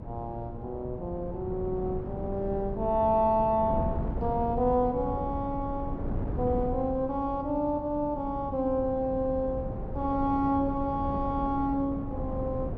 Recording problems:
wind noise; below 250 Hz, SNR 7 dB

